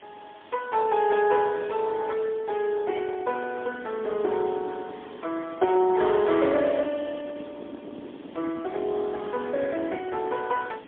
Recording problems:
telephone audio; 240 Hz to 3 kHz, AMR-NB, then MP3
hiss; SNR 26 dB
wind on the microphone; below 440 Hz, SNR 19 dB

